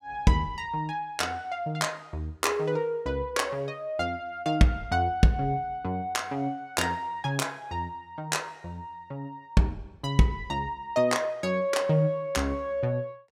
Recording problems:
none

